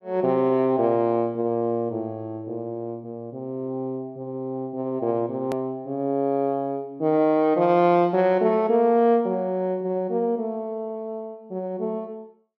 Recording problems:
edit click; at 5.5 s

